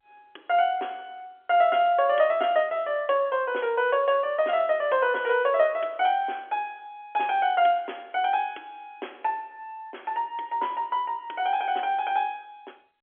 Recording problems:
phone line; 300 Hz to 3.4 kHz, G.711

